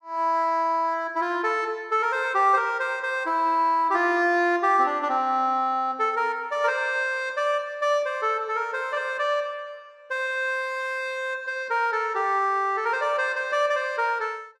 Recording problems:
none

